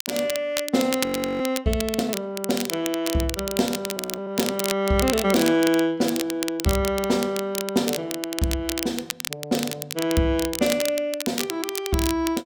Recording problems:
crackle; vinyl, SNR 6 dB
frozen audio; at 1 s and at 4 s

